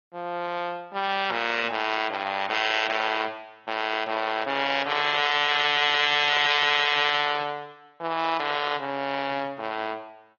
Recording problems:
treble missing; nothing above 6.5 kHz
codec artefacts; AAC, log-spectral distance 4 dB
distorted audio; soft clipping, signal-to-distortion ratio 11 dB

